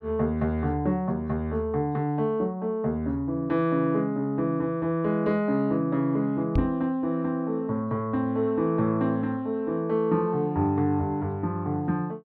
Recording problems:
microphone bump; at 6.5 s; peak +4 dB vs average level

